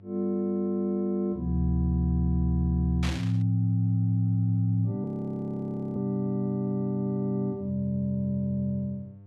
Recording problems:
hum; 50 Hz, harmonics up to 700 Hz, SNR 25 dB
burst of static; at 3 s; peak -4 dB vs average level
frozen audio; at 5 s for 1 s

